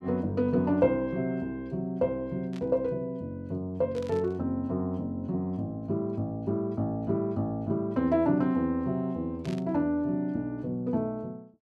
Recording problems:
static burst; at 2.5 s, at 4 s and at 9.5 s; peak -13 dB vs average level

